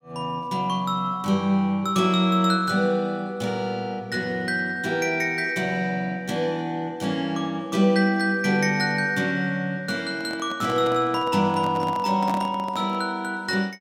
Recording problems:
microphone handling noise; from 10 to 13 s; peak -4 dB vs average level

